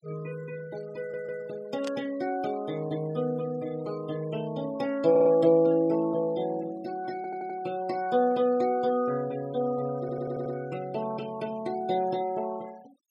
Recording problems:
denoising artefacts; signal-to-artefact ratio 22 dB
audio stuttering; 4 times, first at 1 s
static burst; at 2 s; peak -8 dB vs average level

